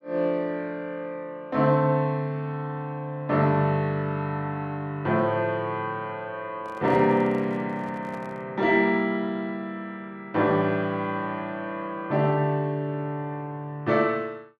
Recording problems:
handling noise; from 6.5 to 8.5 s; peak -10 dB vs average level

